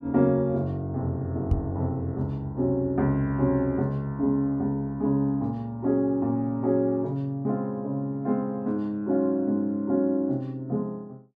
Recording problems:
knock on the microphone; at 1.5 s; peak +4 dB vs average level

